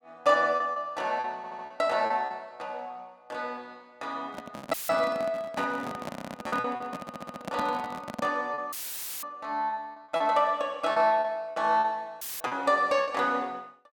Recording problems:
lost packets; 7% of the sound replaced, filled with repeated pitch periods
stutter; at 1.5 s, at 6 s and at 7 s
handling noise; from 4.5 to 8.5 s; peak -2 dB vs average level
audio cutting out; at 4.5 s, at 8.5 s for 0.5 s and at 12 s; filled with static

